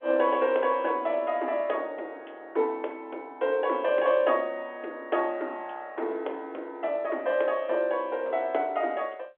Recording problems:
telephone audio; 280 Hz to 3.6 kHz, G.711

